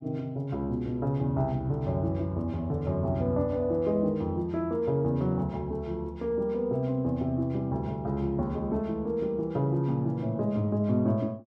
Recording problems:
none

